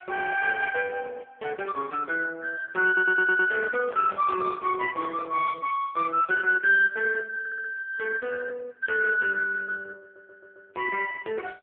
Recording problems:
telephone audio; 320 Hz to 2.3 kHz, AMR-NB
stutter; at 3 s, at 7.5 s and at 10 s
microphone handling noise; from 3 to 5.5 s; peak -8 dB vs average level

